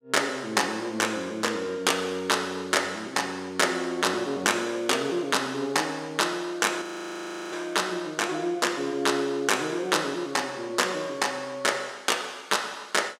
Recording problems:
frozen audio; at 7 s for 0.5 s

